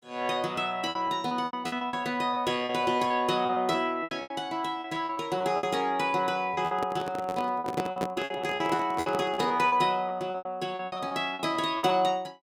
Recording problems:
packet loss; 15% of the sound replaced, filled with repeated pitch periods
handling noise; from 6.5 to 9.5 s; peak +1 dB vs average level

